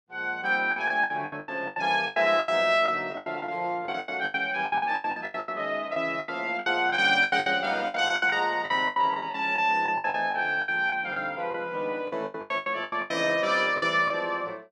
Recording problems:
packet loss; 19% of the sound replaced, filled with the last packet

